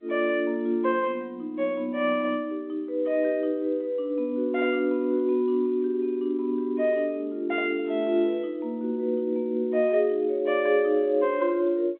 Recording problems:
phone line; 220 Hz to 3.4 kHz, G.711

